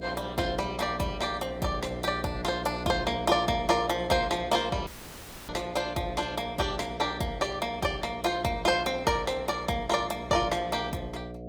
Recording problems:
codec artefacts; Opus, log-spectral distance 3 dB, nothing above 19 kHz
hum; 60 Hz, harmonics up to 720 Hz, SNR 11 dB
dropout; at 5 s for 0.5 s

